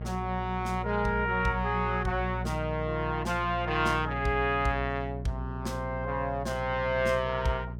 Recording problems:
hum; 60 Hz, harmonics up to 600 Hz, SNR 7 dB

